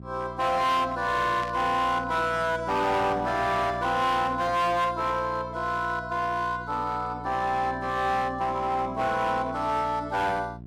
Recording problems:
distortion; hard clipping, uneven, signal-to-distortion ratio 10 dB
hum; 60 Hz, harmonics up to 720 Hz, SNR 16 dB
static burst; at 1.5 s; peak -9 dB vs average level

